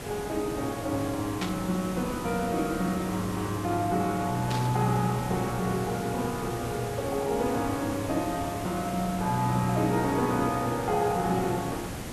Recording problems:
hiss; slope -5 dB per octave, SNR 8 dB
static burst; at 1.5 s and at 4.5 s; peak -1 dB vs average level

